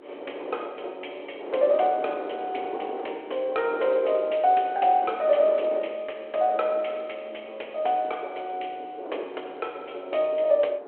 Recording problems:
phone line; 340 Hz to 3.4 kHz, G.726
wind on the microphone; below 670 Hz, SNR 13 dB

